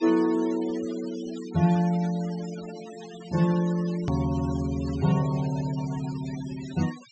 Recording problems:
treble missing; nothing above 8 kHz
denoising artefacts; signal-to-artefact ratio 17 dB
click at an edit; at 4 s

